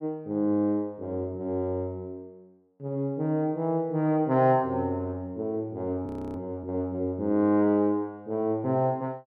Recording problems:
frozen audio; at 6 s

